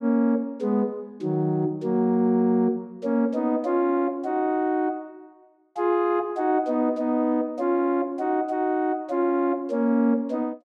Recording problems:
none

